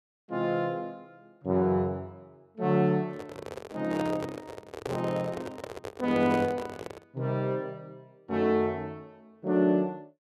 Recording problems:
microphone handling noise; from 3 to 7 s; peak -1 dB vs average level

